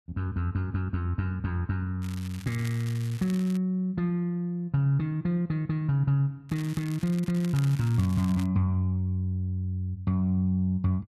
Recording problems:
crackle; from 2 to 3.5 s and from 6.5 to 8.5 s; loose cable, SNR 18 dB

